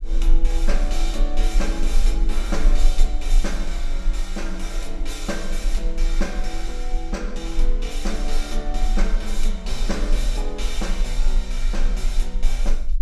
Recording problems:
low-frequency rumble; below 32 Hz, strongest tone 22 Hz, SNR -5 dB

